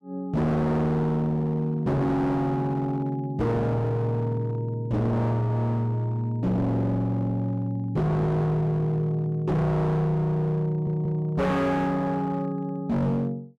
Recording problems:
distorted audio; hard clipping, signal-to-distortion ratio 7 dB
stutter; at 11 s

